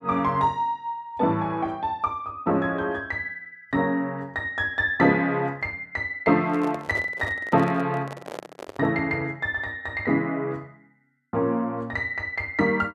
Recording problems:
handling noise; from 6.5 to 9 s; peak -6 dB vs average level

